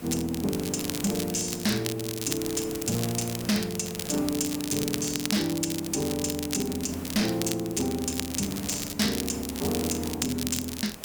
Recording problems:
distortion; soft clipping, signal-to-distortion ratio 7 dB
hiss; slope -5 dB per octave, SNR 13 dB
crackle; vinyl, SNR 6 dB

